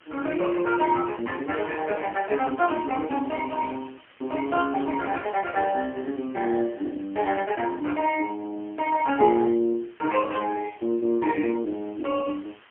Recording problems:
telephone audio; 220 Hz to 2.8 kHz, AMR-NB, then MP3
background hiss; SNR 27 dB

